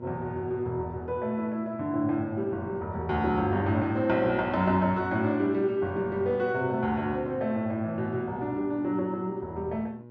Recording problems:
mains hum; 60 Hz, harmonics up to 1.1 kHz, SNR 17 dB

